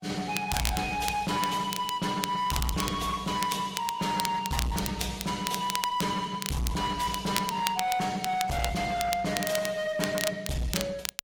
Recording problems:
lossy compression; AAC, log-spectral distance 3 dB, nothing above 15.5 kHz
distorted audio; hard clipping, uneven, signal-to-distortion ratio 8 dB
crackling; vinyl, SNR 6 dB

